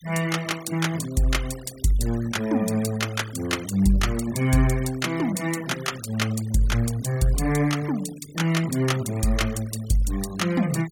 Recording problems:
denoising artefacts; signal-to-artefact ratio 18 dB

